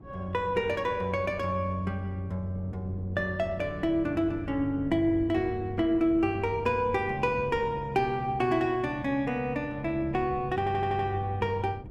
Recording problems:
wind on the microphone; below 260 Hz, SNR 16 dB
stutter; at 11 s

